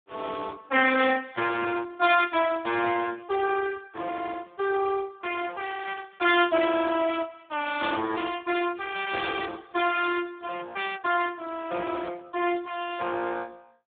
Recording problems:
telephone audio; 260 Hz to 2.9 kHz, Speex

